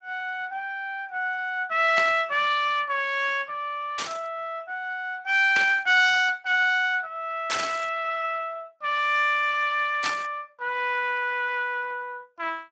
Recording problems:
codec artefacts; Speex, log-spectral distance 3 dB
static burst; 5 times, first at 2 s; peak +1 dB vs average level

